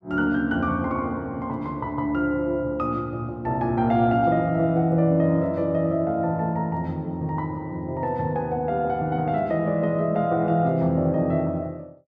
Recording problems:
none

